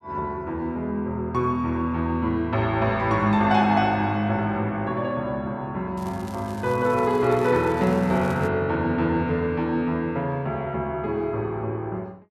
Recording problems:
crackle; from 6 to 8.5 s; loose cable, SNR 23 dB

